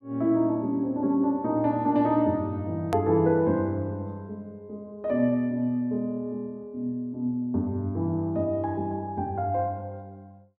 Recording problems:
click at an edit; at 3 s

